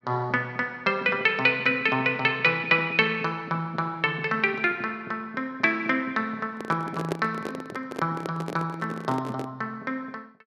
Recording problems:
handling noise; from 6.5 to 9.5 s; peak +1 dB vs average level

